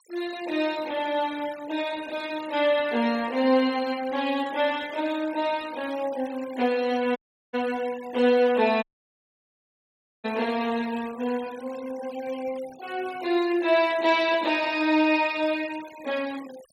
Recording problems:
noise reduction artefacts; signal-to-artefact ratio 20 dB
dropout; at 7 s and at 9 s for 1.5 s

